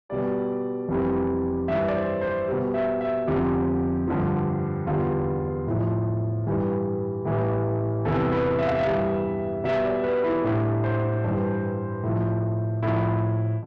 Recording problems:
distorted audio; soft clipping, signal-to-distortion ratio 10 dB

